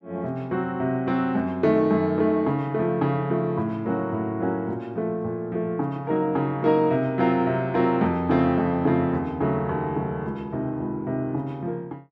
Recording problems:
none

